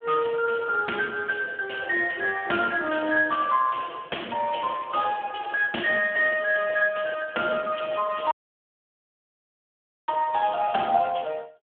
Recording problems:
telephone audio; 260 Hz to 2.9 kHz, Speex
audio cutting out; at 8.5 s for 2 s

